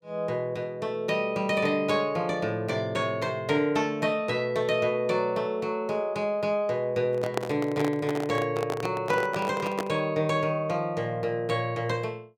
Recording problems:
microphone handling noise; from 7 to 10 s; peak +3 dB vs average level

